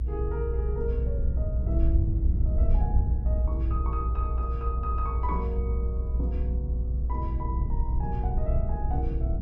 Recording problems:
low-frequency rumble; below 68 Hz, strongest tone 60 Hz, SNR -8 dB

